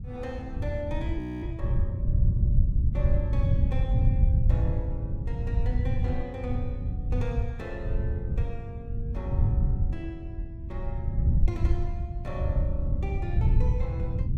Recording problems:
wind on the microphone; below 110 Hz, SNR -10 dB
frozen audio; at 1 s

